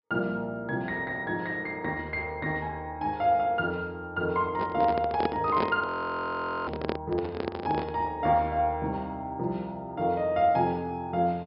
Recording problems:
low-pass filter; nothing above 5.5 kHz
microphone handling noise; from 4.5 to 8 s; peak +4 dB vs average level
frozen audio; at 6 s for 1 s

